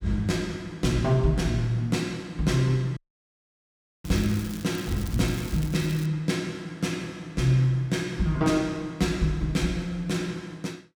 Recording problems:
audio cutting out; at 3 s for 1 s
crackling; from 4 to 6 s; loose cable, SNR 16 dB

